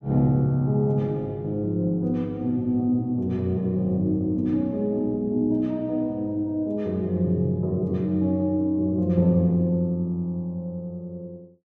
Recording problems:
none

